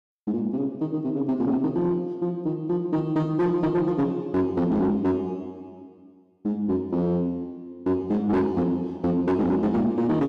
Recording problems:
distortion; soft clipping, signal-to-distortion ratio 10 dB

